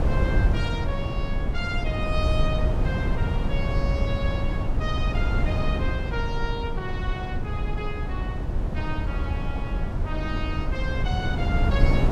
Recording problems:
wind noise; below 130 Hz, SNR -6 dB

